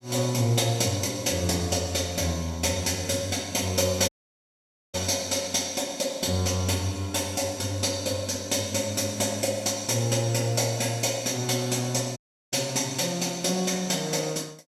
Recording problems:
dropout; at 4 s for 1 s and at 12 s

